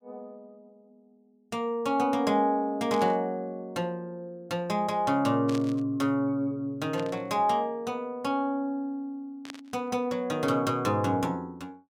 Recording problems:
burst of static; 4 times, first at 3 s; peak -8 dB vs average level

